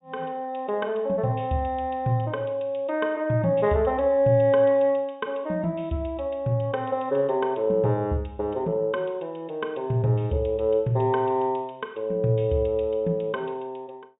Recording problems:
treble missing; nothing above 4 kHz

